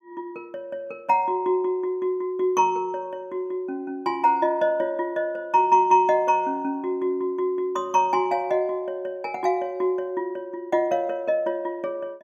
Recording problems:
none

